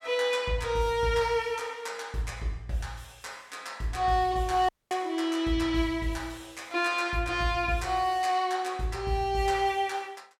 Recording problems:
dropout; at 4.5 s

